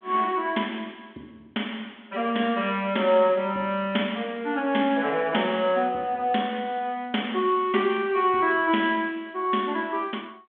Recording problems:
telephone audio; 220 Hz to 3.4 kHz, G.726

